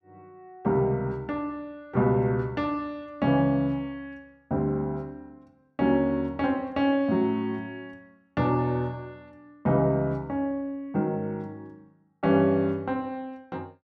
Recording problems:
none

